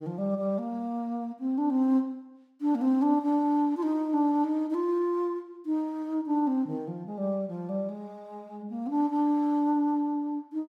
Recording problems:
none

